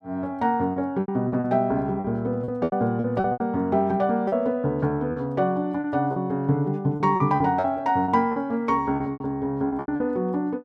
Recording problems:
lost packets; 11% of the sound replaced, filled with repeated pitch periods

